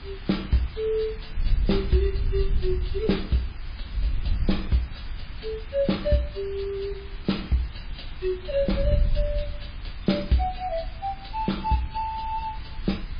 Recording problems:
lossy codec; MP3, log-spectral distance 5 dB, nothing above 5 kHz
background hiss; SNR 17 dB
wind noise; below 62 Hz, SNR 6 dB

